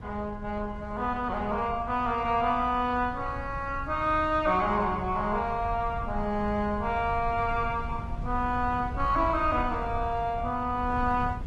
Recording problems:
lossy codec; Opus, log-spectral distance 2 dB
wind noise; below 110 Hz, SNR 11 dB

